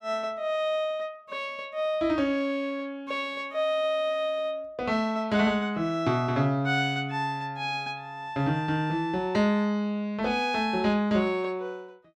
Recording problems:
none

